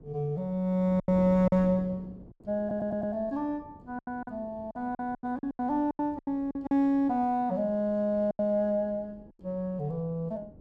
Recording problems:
wind on the microphone; below 350 Hz, SNR 20 dB
packet loss; 9% of the sound replaced, filled with silence
stutter; at 2.5 s

